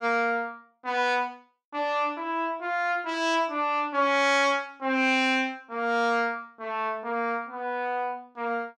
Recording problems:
none

